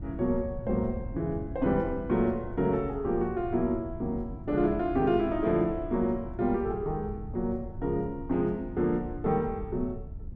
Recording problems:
wind noise; below 110 Hz, SNR 12 dB

